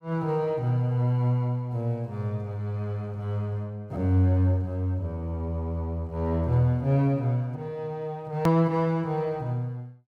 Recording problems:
edit click; at 8.5 s

